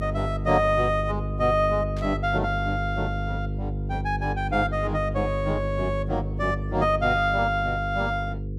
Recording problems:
mains hum; 50 Hz, harmonics up to 500 Hz, SNR 5 dB
static burst; at 2 s; peak -15 dB vs average level

